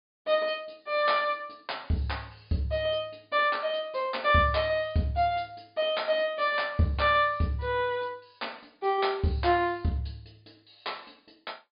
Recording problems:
low-pass filter; nothing above 5 kHz

